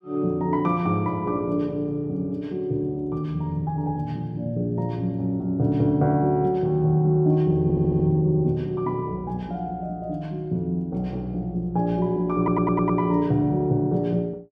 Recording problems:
audio stuttering; at 7.5 s and at 12 s

